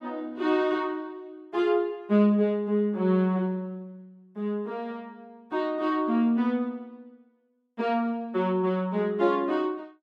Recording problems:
none

